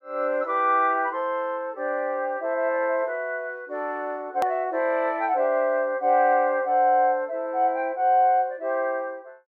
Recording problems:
hard cut with a click; at 4.5 s

